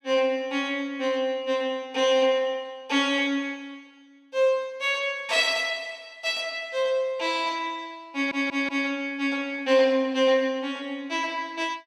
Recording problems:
audio stuttering; at 8 s

